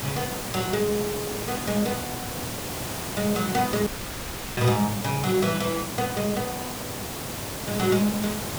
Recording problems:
background hiss; slope -4 dB per octave, SNR 5 dB
audio cutting out; at 4 s for 0.5 s

